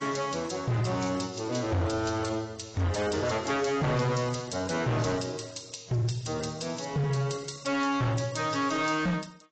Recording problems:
lossy codec; AAC, log-spectral distance 7 dB, nothing above 7.8 kHz
distortion; hard clipping, signal-to-distortion ratio 8 dB

